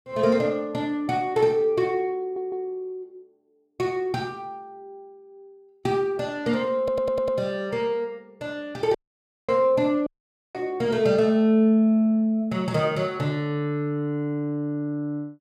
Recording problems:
audio stuttering; at 2 s and at 7 s
audio cutting out; at 9 s for 0.5 s and at 10 s

